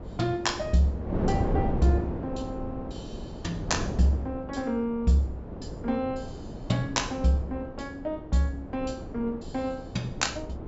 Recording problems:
treble missing; nothing above 8 kHz
wind on the microphone; below 390 Hz, SNR 6 dB

